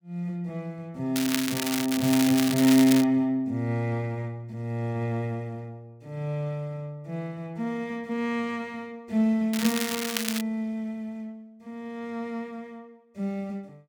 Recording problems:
crackle; from 1 to 3 s and at 9.5 s; loose cable, SNR 3 dB

